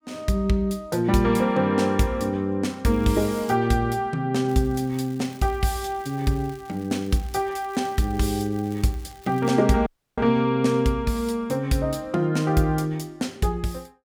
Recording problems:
crackle; at 3 s and from 4.5 to 9.5 s; loose cable, SNR 26 dB
audio cutting out; at 10 s

